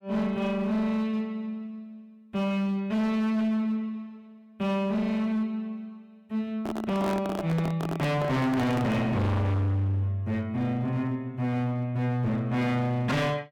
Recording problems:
distortion; hard clipping, signal-to-distortion ratio 6 dB
handling noise; from 6.5 to 9 s; peak +1 dB vs average level

